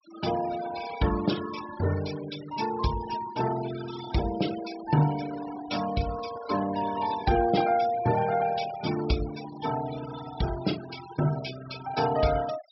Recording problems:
treble missing; nothing above 5.6 kHz
noise reduction artefacts; signal-to-artefact ratio 12 dB

